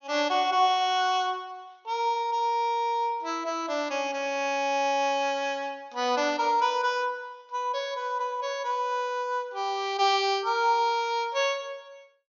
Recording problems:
treble cut off; nothing above 6.8 kHz

